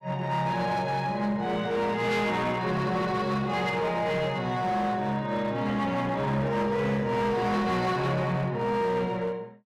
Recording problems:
distortion; hard clipping, uneven, signal-to-distortion ratio 10 dB

